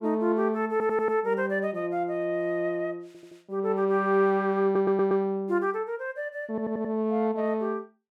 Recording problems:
stutter; 4 times, first at 0.5 s

